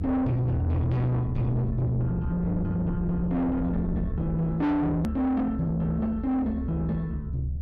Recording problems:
distorted audio; soft clipping, signal-to-distortion ratio 7 dB
hum; 60 Hz, harmonics up to 720 Hz, SNR 29 dB
rumble; below 150 Hz, SNR 7 dB
edit click; at 5 s

